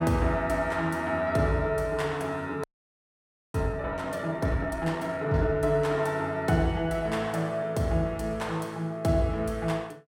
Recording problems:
audio freezing; at 2.5 s for 1 s

